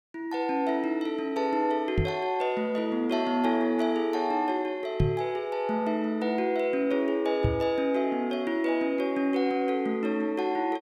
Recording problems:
microphone thump; at 2 s, at 5 s and at 7.5 s; peak +6 dB vs average level

